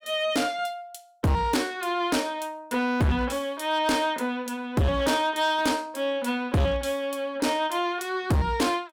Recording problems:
distortion; hard clipping, uneven, signal-to-distortion ratio 7 dB

